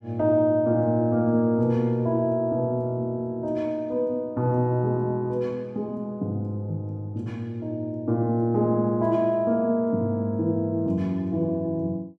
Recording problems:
none

